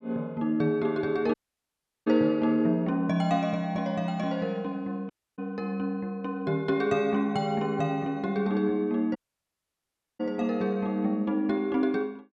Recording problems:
dropout; at 1.5 s for 0.5 s, at 5 s and at 9 s for 1 s

